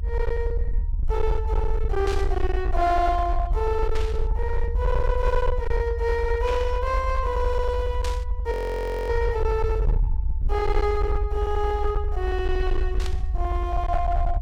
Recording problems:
distorted audio; hard clipping, uneven, signal-to-distortion ratio 10 dB
rumble; below 70 Hz, SNR 1 dB
static burst; 5 times, first at 2 s; peak -3 dB vs average level
audio freezing; at 8.5 s for 0.5 s

